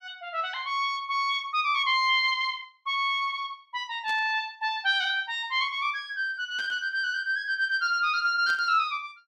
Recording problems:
burst of static; at 4 s, at 6.5 s and at 8.5 s; peak -11 dB vs average level

